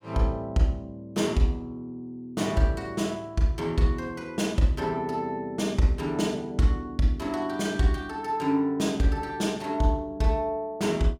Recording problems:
none

